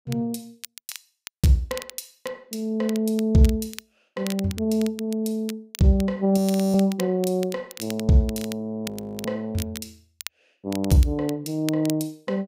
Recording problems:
crackling; vinyl, SNR 16 dB
frozen audio; at 6.5 s and at 9 s

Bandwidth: 15.5 kHz